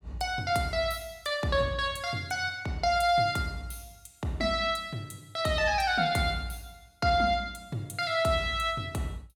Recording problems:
none

